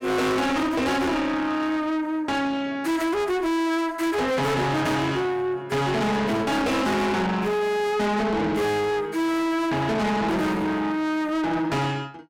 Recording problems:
distorted audio; soft clipping, signal-to-distortion ratio 6 dB

